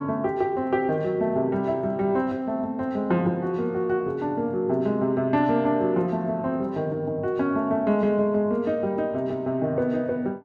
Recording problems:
none

